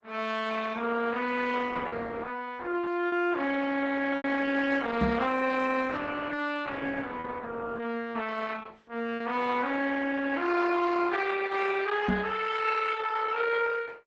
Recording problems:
codec artefacts; Opus, log-spectral distance 5 dB, nothing above 8 kHz
lost packets; 1.7% of the sound replaced, filled with repeated pitch periods
microphone thump; at 5 s and at 12 s; peak +4 dB vs average level

